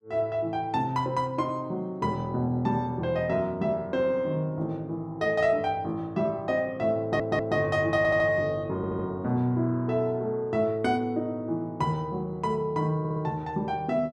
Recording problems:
audio stuttering; 4 times, first at 7 s

